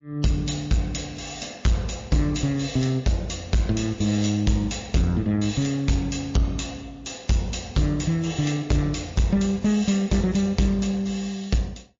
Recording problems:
lossy codec; MP3, log-spectral distance 6 dB, nothing above 6.9 kHz
distorted audio; soft clipping, signal-to-distortion ratio 11 dB

